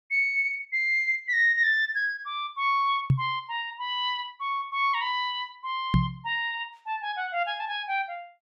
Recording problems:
knock on the microphone; at 3 s and at 6 s; peak +8 dB vs average level

